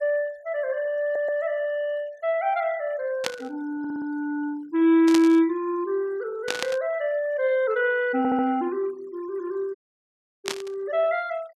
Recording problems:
denoising artefacts; signal-to-artefact ratio 27 dB
stutter; at 1 s, at 4 s and at 8 s
burst of static; 4 times, first at 3 s; peak +2 dB vs average level
audio cutting out; at 10 s for 0.5 s

